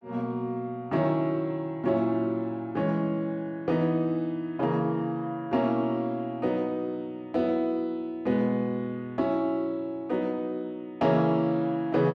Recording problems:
none

